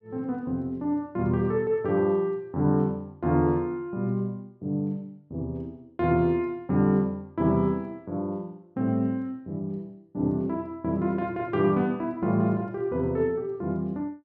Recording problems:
none

